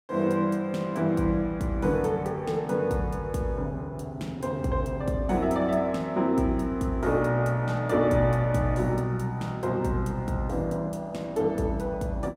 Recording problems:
none

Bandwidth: 16.5 kHz